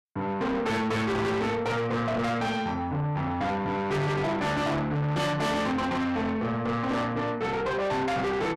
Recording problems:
distortion; soft clipping, signal-to-distortion ratio 6 dB

